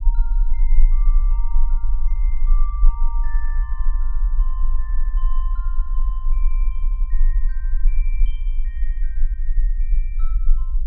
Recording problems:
low-frequency rumble; below 34 Hz, strongest tone 22 Hz, SNR -21 dB

